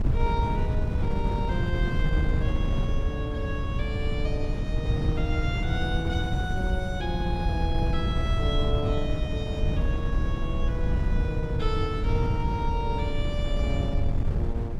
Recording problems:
wind on the microphone; below 120 Hz, SNR -5 dB

